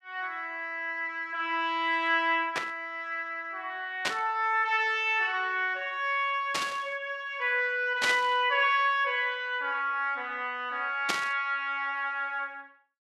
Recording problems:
static burst; 5 times, first at 2.5 s; peak +4 dB vs average level

